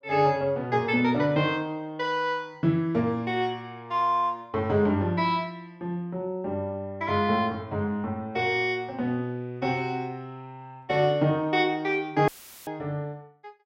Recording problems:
audio cutting out; at 12 s; filled with static

